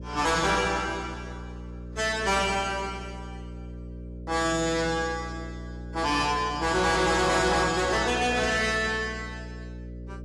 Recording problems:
codec artefacts; AAC, log-spectral distance 3 dB, nothing above 11 kHz
distorted audio; soft clipping, signal-to-distortion ratio 6 dB
hum; 60 Hz, harmonics up to 600 Hz, SNR 14 dB

